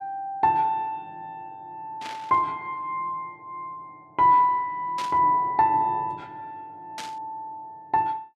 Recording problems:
static burst; at 2 s, at 5 s and at 7 s; peak -8 dB vs average level

